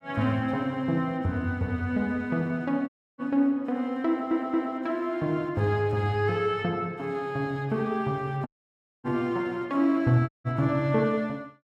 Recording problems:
audio cutting out; at 3 s, at 8.5 s for 0.5 s and at 10 s
audio stuttering; at 4 s

